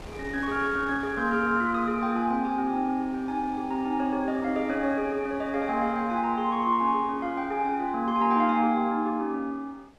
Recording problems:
wind on the microphone; below 1 kHz, SNR 22 dB

